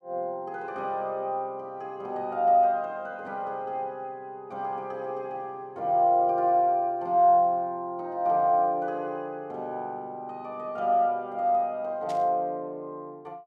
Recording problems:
burst of static; at 12 s; peak -13 dB vs average level

